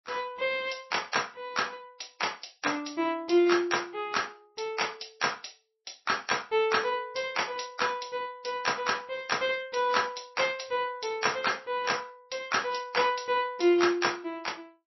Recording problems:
lossy codec; MP3, log-spectral distance 7 dB, nothing above 5.7 kHz

